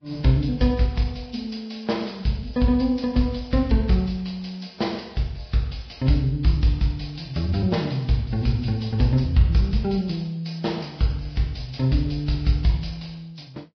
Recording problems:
lossy compression; Vorbis, log-spectral distance 6 dB, nothing above 5.2 kHz

